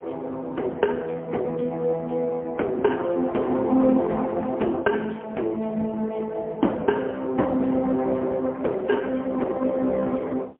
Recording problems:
phone line; 220 Hz to 3.5 kHz, AMR-NB, then MP3

